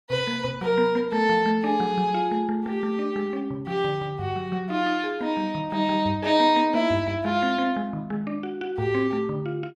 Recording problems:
none

